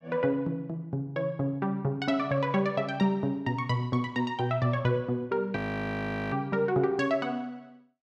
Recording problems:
frozen audio; at 5.5 s for 1 s

